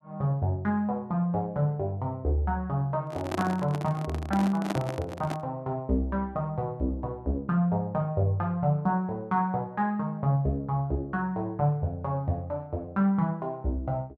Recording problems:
handling noise; from 3 to 5.5 s; peak +1 dB vs average level

